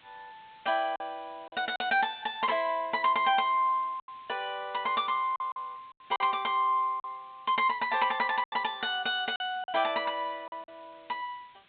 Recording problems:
treble cut off; nothing above 4 kHz
background hiss; SNR 30 dB
packet loss; 6% of the sound replaced, filled with silence

